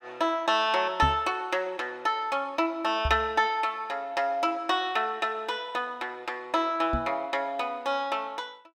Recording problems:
knock on the microphone; at 1 s, at 3 s and at 7 s; peak +2 dB vs average level

